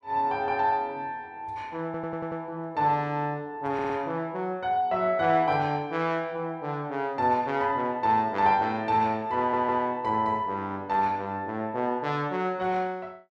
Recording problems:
audio stuttering; at 2 s, at 3.5 s and at 9.5 s

